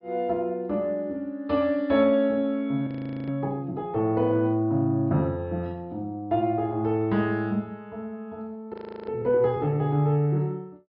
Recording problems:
treble missing; nothing above 5.5 kHz
audio freezing; at 3 s and at 8.5 s

